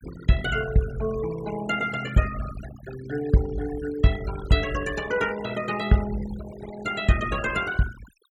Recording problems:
denoising artefacts; signal-to-artefact ratio 14 dB

